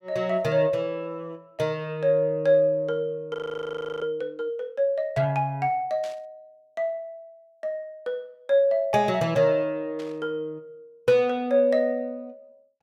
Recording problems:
audio freezing; at 3.5 s for 0.5 s
burst of static; at 6 s and at 10 s; peak -14 dB vs average level

